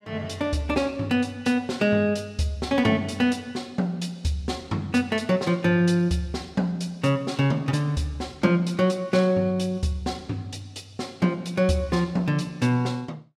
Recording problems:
none

